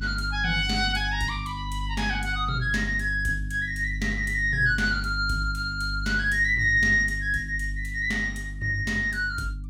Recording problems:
electrical hum; 50 Hz, harmonics up to 300 Hz, SNR 9 dB

